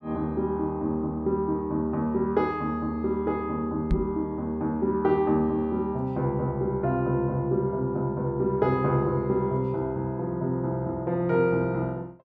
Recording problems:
microphone bump; at 4 s; peak +4 dB vs average level

